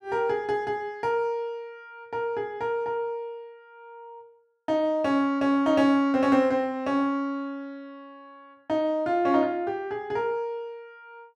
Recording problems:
none

